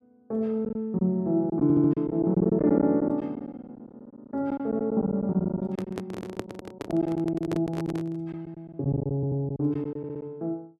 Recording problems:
lost packets; 12% of the sound replaced, filled with silence
stutter; at 1.5 s, at 9 s and at 10 s
microphone handling noise; from 5.5 to 8 s; peak -1 dB vs average level

